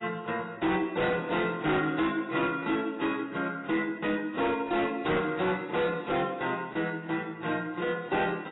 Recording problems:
lossy codec; AAC, log-spectral distance 3 dB, nothing above 3.9 kHz
distorted audio; hard clipping, signal-to-distortion ratio 11 dB

